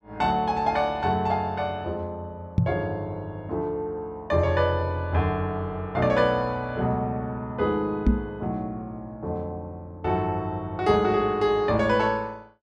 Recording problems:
microphone thump; at 2.5 s and at 8 s; peak +8 dB vs average level

